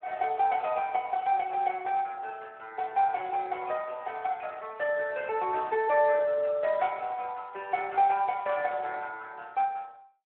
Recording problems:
telephone audio; 320 Hz to 3.1 kHz, Speex

